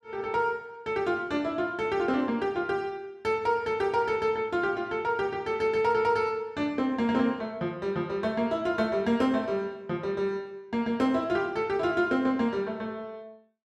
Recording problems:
none

